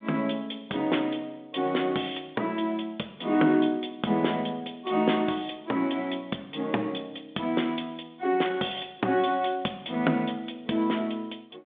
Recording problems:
phone line; 240 Hz to 3.6 kHz, G.726

